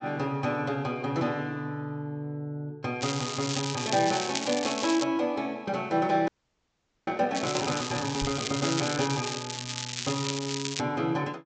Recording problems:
treble cut off; nothing above 8 kHz
crackling; from 3 to 5 s and from 7.5 to 11 s; loose cable, SNR 4 dB
frozen audio; at 6.5 s for 1 s
microphone bump; at 8 s; peak -3 dB vs average level

